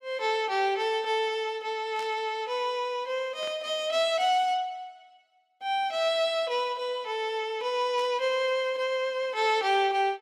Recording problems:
static burst; at 2 s, at 3.5 s and at 8 s; peak -12 dB vs average level

